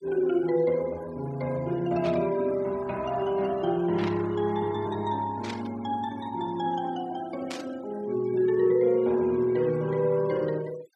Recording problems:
denoising artefacts; signal-to-artefact ratio 22 dB
static burst; 4 times, first at 2 s; peak -6 dB vs average level

